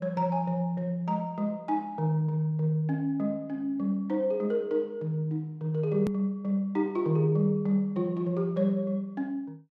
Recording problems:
hard cut with a click; at 6 s

